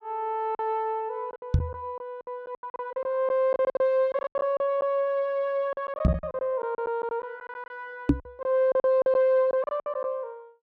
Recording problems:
packet loss; 14% of the sound replaced, filled with silence
knock on the microphone; at 1.5 s, at 6 s and at 8 s; peak +10 dB vs average level

